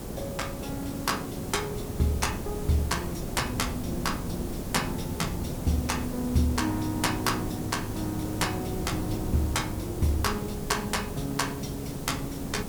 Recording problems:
hiss; SNR 5 dB
wind noise; below 220 Hz, SNR 10 dB

